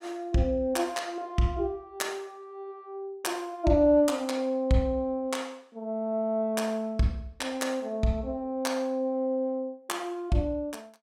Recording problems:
none

